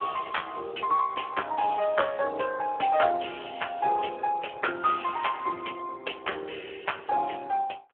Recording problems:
phone line; 320 Hz to 3.3 kHz, Speex

